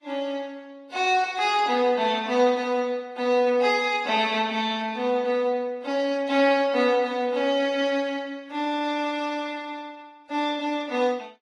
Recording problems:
codec artefacts; AAC, then Vorbis, log-spectral distance 2 dB, nothing above 11.3 kHz

